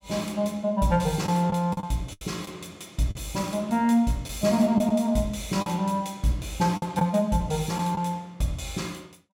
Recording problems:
packet loss; 5% of the sound replaced, filled with the last packet

